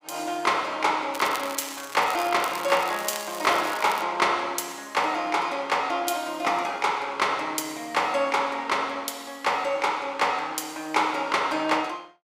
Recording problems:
crackle; from 1 to 4 s; loose cable, SNR 13 dB

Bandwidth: 15.5 kHz